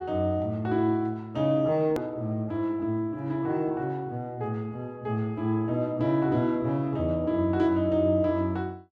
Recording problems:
edit click; at 2 s

